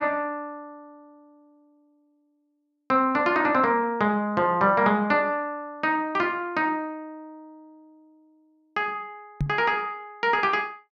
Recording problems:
microphone bump; at 9.5 s; peak +1 dB vs average level

